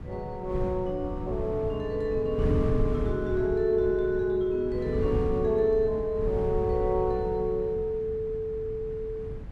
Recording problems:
wind noise; below 160 Hz, SNR 7 dB

